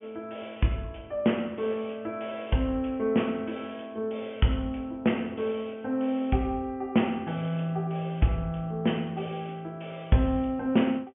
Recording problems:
treble missing; nothing above 3.2 kHz

